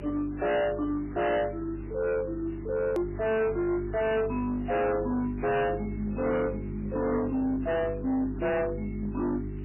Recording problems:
lossy codec; MP3, log-spectral distance 6 dB, nothing above 2.4 kHz
distortion; hard clipping, signal-to-distortion ratio 6 dB
mains hum; 50 Hz, harmonics up to 400 Hz, SNR 10 dB
background hiss; SNR 28 dB
hard cut with a click; at 3 s

